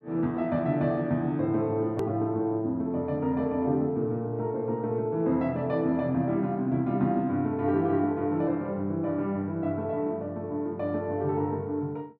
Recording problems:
click at an edit; at 2 s

